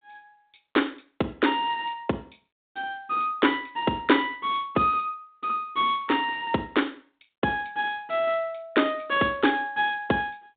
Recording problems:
phone line; 150 Hz to 3.7 kHz, G.726

